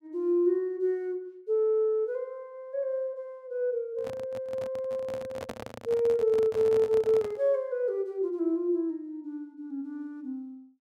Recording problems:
microphone handling noise; from 4 to 7.5 s; peak -4 dB vs average level

